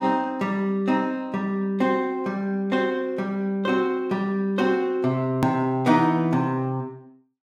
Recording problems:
click at an edit; at 5.5 s

